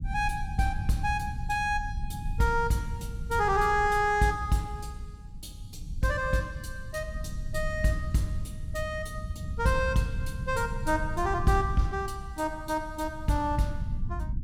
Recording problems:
rumble; below 100 Hz, SNR 8 dB

